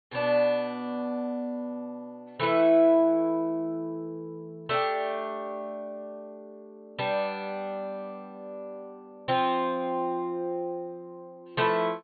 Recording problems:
treble missing; nothing above 4.4 kHz

